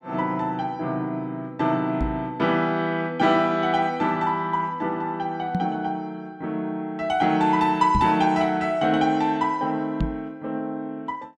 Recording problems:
microphone bump; 4 times, first at 2 s; peak +2 dB vs average level

